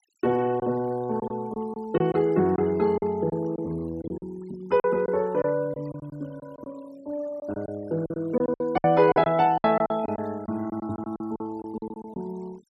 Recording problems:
noise reduction artefacts; signal-to-artefact ratio 25 dB
lost packets; 11% of the sound replaced, filled with silence

